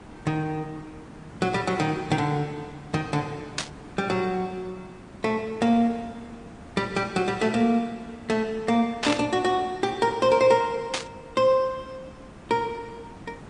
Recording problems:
lossy codec; MP3, log-spectral distance 2 dB, nothing above 9.2 kHz
background hiss; slope -7 dB per octave, SNR 20 dB
burst of static; at 3.5 s, at 9 s and at 11 s; peak +3 dB vs average level

